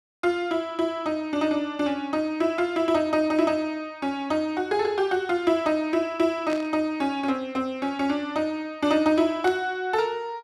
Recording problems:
burst of static; at 6.5 s and at 9.5 s; peak -8 dB vs average level

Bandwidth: 13.5 kHz